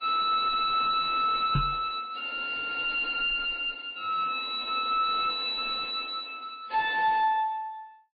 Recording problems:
lossy codec; MP3, then AAC, log-spectral distance 3 dB, nothing above 4 kHz
distortion; soft clipping, signal-to-distortion ratio 8 dB
knock on the microphone; at 1.5 s; peak +5 dB vs average level

